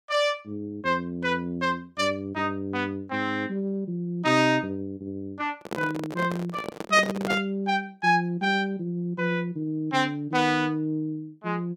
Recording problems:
microphone handling noise; from 5.5 to 7.5 s; peak 0 dB vs average level

